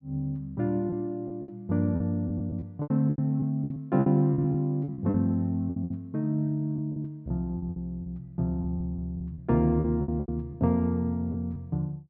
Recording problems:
packet loss; 12% of the sound replaced, filled with repeated pitch periods

